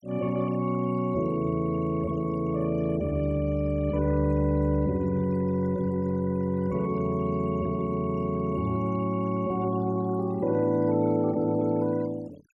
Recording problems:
denoising artefacts; signal-to-artefact ratio 24 dB

